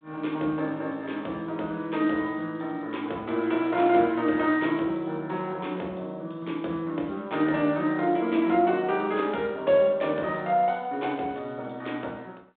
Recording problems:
phone line; 240 Hz to 3.8 kHz, G.726

